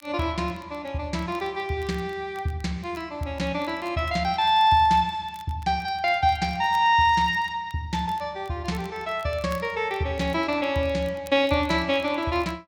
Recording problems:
crackle; vinyl, SNR 28 dB

